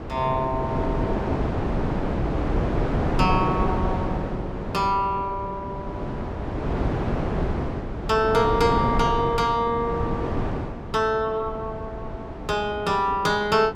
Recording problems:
wind noise; below 500 Hz, SNR 3 dB

